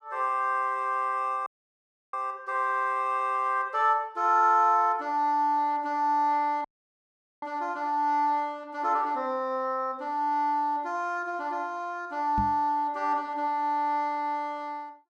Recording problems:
audio cutting out; at 1.5 s for 0.5 s and at 6.5 s for 1 s
microphone thump; at 12 s; peak -1 dB vs average level

